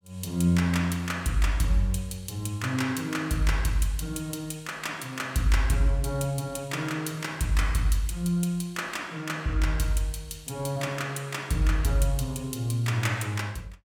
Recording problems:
none

